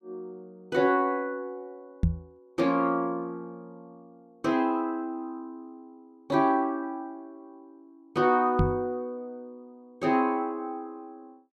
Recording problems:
microphone thump; at 2 s and at 8.5 s; peak +7 dB vs average level

